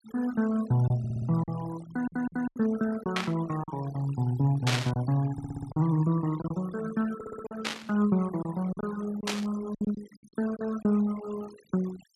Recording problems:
noise reduction artefacts; signal-to-artefact ratio 17 dB
lost packets; 6% of the sound replaced, filled with silence
stutter; 4 times, first at 1 s
burst of static; 4 times, first at 3 s; peak +4 dB vs average level

